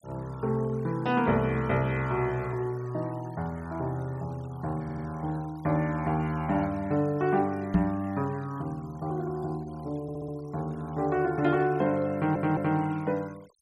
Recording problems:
noise reduction artefacts; signal-to-artefact ratio 25 dB
audio stuttering; at 5 s, at 10 s and at 12 s
microphone bump; at 7.5 s; peak +8 dB vs average level

